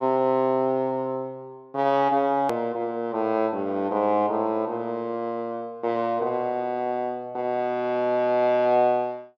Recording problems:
click at an edit; at 2.5 s

